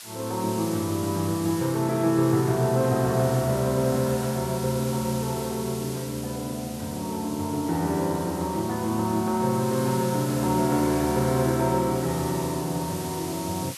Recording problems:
background hiss; slope +3 dB per octave, SNR 12 dB

